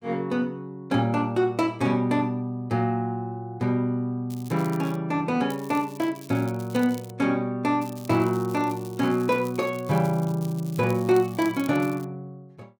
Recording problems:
crackling; at 4.5 s, from 5.5 to 7 s and from 8 to 12 s; loose cable, SNR 21 dB

